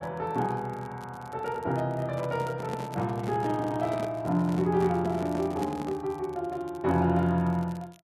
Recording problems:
crackle; vinyl, SNR 27 dB
microphone handling noise; from 2 to 6 s; peak -4 dB vs average level

